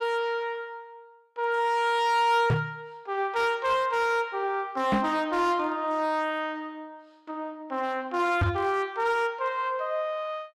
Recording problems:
distortion; hard clipping, uneven, signal-to-distortion ratio 12 dB
microphone thump; at 2.5 s, at 5 s and at 8.5 s; peak +5 dB vs average level

